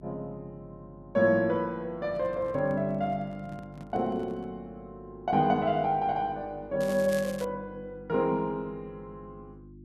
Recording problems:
hum; 50 Hz, harmonics up to 350 Hz, SNR 21 dB
microphone handling noise; from 2 to 4.5 s; peak -11 dB vs average level
crackling; at 7 s; loose cable, SNR 16 dB

